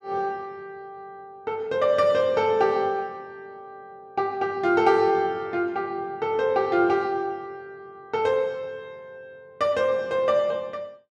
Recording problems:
none

